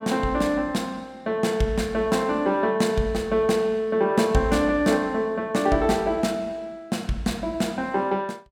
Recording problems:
none

